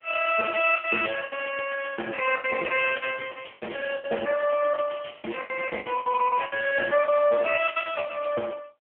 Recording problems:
phone line; 260 Hz to 3 kHz, AMR-NB
packet loss; 15% of the sound replaced, filled with the last packet

